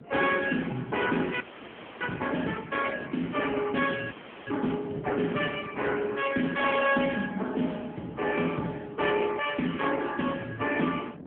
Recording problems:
phone line; 170 Hz to 3.3 kHz, AMR-NB
wind noise; below 380 Hz, SNR 19 dB
frozen audio; at 1.5 s for 0.5 s and at 4 s

